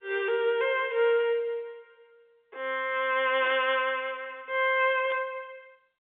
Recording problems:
phone line; 300 Hz to 3.6 kHz, G.711
burst of static; at 3.5 s and at 5 s; peak -10 dB vs average level

